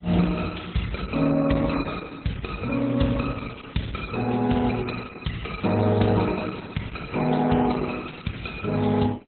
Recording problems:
codec artefacts; MP3, then Opus, log-spectral distance 6 dB, nothing above 4.1 kHz

